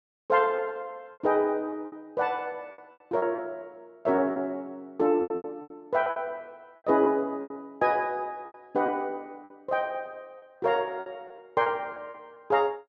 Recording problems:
lost packets; 11% of the sound replaced, filled with repeated pitch periods

